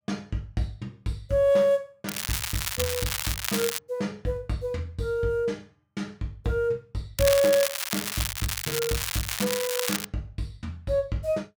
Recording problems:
crackling; from 2 to 4 s and from 7 to 10 s; loose cable, SNR 1 dB

